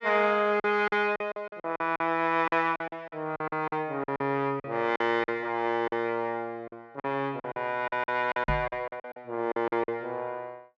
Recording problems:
lost packets; 14% of the sound replaced, filled with silence
microphone bump; at 8.5 s; peak +1 dB vs average level

